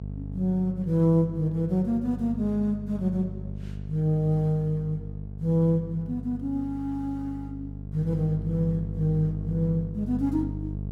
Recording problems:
electrical hum; 50 Hz, harmonics up to 500 Hz, SNR 9 dB

